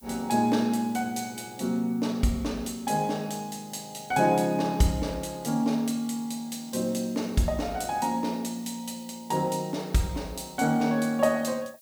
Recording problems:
hiss; SNR 25 dB

